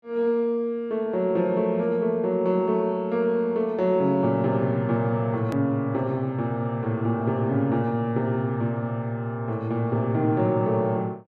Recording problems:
edit click; at 5.5 s

